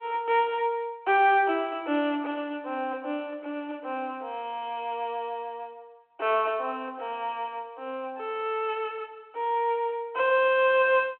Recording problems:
telephone audio; 260 Hz to 3.5 kHz, G.726

